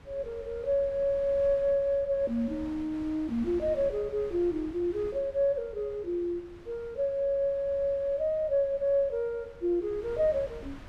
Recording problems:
wind noise; below 470 Hz, SNR 20 dB

